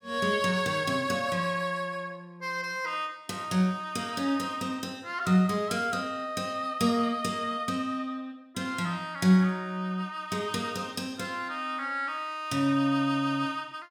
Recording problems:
none

